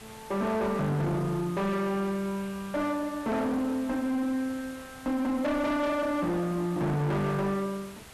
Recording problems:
distortion; hard clipping, uneven, signal-to-distortion ratio 8 dB
hiss; slope -2 dB per octave, SNR 18 dB

